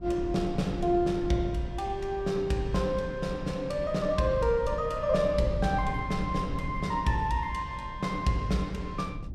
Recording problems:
wind on the microphone; below 130 Hz, SNR 11 dB

